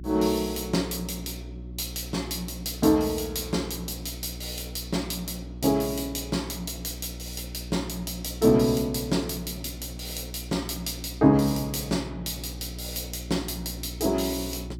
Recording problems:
hum; 60 Hz, harmonics up to 360 Hz, SNR 12 dB

